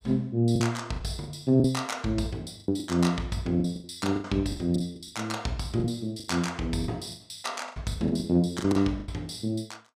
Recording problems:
lost packets; 14% of the sound replaced, filled with the last packet

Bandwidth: 15.5 kHz